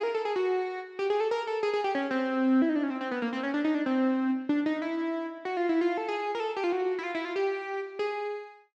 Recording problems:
none

